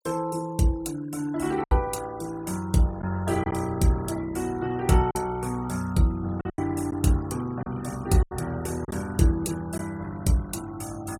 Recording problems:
denoising artefacts; signal-to-artefact ratio 19 dB
packet loss; 4% of the sound replaced, filled with silence

